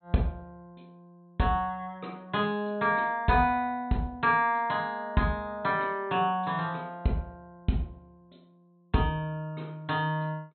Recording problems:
low-pass filter; nothing above 4.2 kHz

